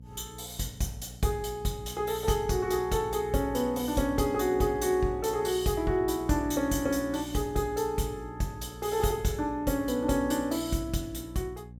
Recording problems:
mains hum; 60 Hz, harmonics up to 540 Hz, SNR 16 dB

